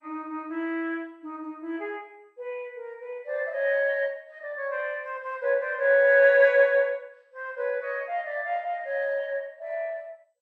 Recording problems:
codec artefacts; MP2, log-spectral distance 2 dB

